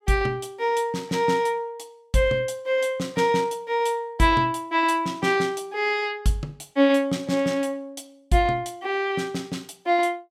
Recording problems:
none

